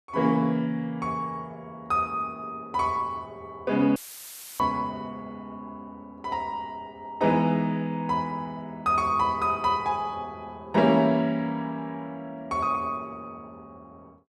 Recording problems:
dropout; at 4 s for 0.5 s; filled with static

